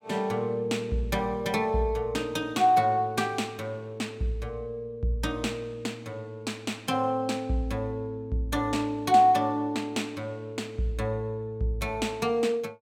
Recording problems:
none

